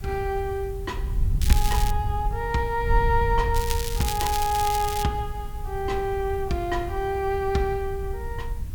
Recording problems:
hiss; slope -2 dB per octave, SNR 24 dB
wind noise; below 76 Hz, SNR 4 dB
crackling; at 1.5 s and from 3.5 to 5 s; loose cable, SNR 6 dB

